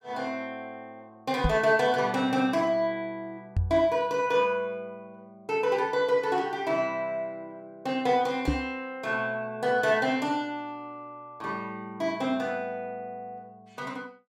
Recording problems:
microphone bump; at 1.5 s, at 3.5 s and at 8.5 s; peak +5 dB vs average level

